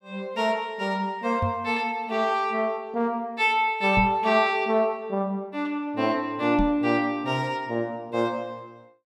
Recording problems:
microphone thump; at 1.5 s, at 4 s and at 6.5 s; peak 0 dB vs average level

